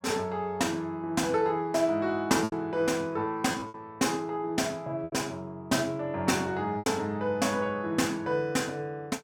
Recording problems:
packet loss; 4% of the sound replaced, filled with repeated pitch periods

